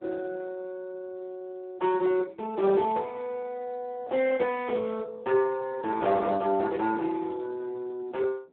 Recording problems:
telephone audio; 300 Hz to 2.8 kHz, Speex
distortion; hard clipping, signal-to-distortion ratio 17 dB
wind on the microphone; below 980 Hz, SNR 18 dB

